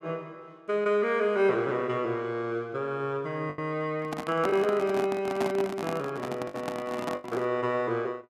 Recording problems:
lost packets; 3% of the sound replaced, filled with the last packet
handling noise; from 4 to 7.5 s; peak +1 dB vs average level

